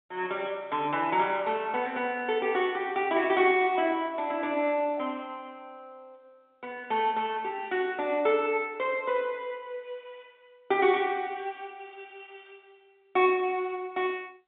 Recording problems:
phone line; 280 Hz to 3.6 kHz, G.711

